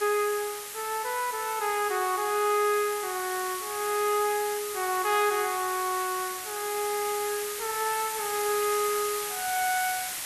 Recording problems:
hiss; slope +2 dB per octave, SNR 5 dB

